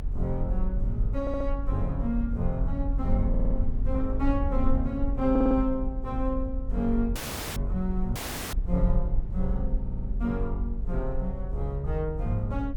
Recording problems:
rumble; below 50 Hz, SNR 1 dB
audio stuttering; 4 times, first at 1 s
dropout; at 7 s and at 8 s

